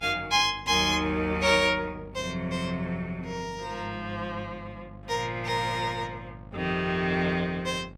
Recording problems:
hum; 50 Hz, harmonics up to 1.1 kHz, SNR 19 dB

